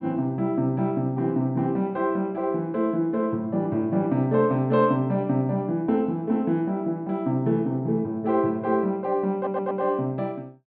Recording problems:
treble cut off; nothing above 4.8 kHz
stutter; at 9.5 s

